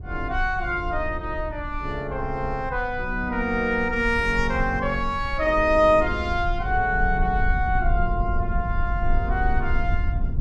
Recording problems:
rumble; below 64 Hz, SNR 6 dB

